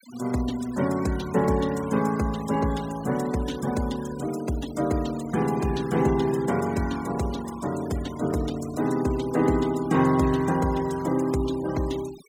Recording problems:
noise reduction artefacts; signal-to-artefact ratio 18 dB

